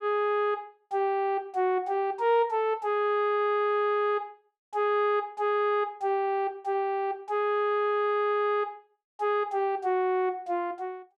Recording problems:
none

